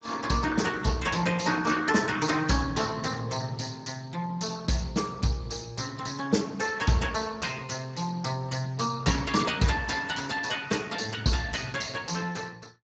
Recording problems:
codec artefacts; Speex, log-spectral distance 6 dB

